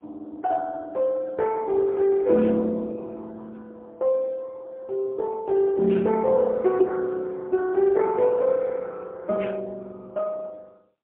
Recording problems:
phone line; 170 Hz to 2.7 kHz, AMR-NB, then MP3

